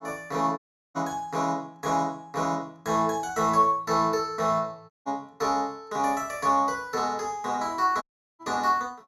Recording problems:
dropout; at 0.5 s, at 5 s and at 8 s

